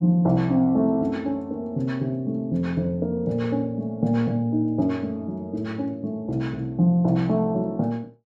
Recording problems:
none

